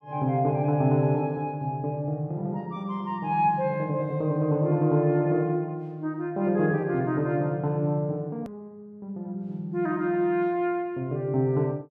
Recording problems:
click at an edit; at 8.5 s

